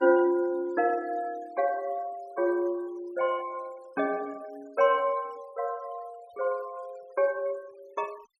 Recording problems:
noise reduction artefacts; signal-to-artefact ratio 25 dB

